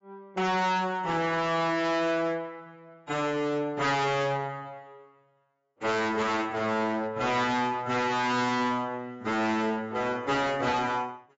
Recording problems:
lossy compression; AAC, then AAC, log-spectral distance 2 dB, nothing above 7.6 kHz
distortion; hard clipping, signal-to-distortion ratio 7 dB

